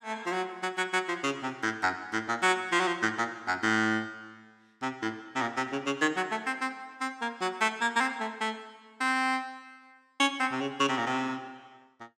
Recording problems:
none

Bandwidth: 17 kHz